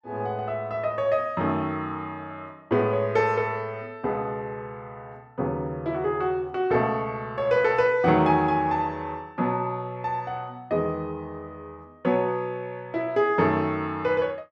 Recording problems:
none

